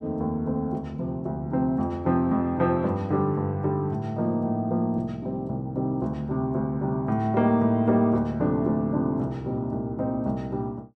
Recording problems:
none

